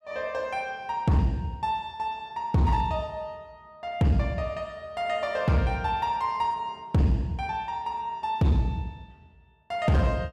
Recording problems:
distortion; hard clipping, signal-to-distortion ratio 11 dB

